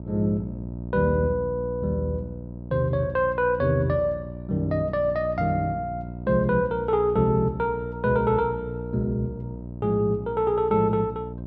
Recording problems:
hum; 60 Hz, harmonics up to 660 Hz, SNR 11 dB

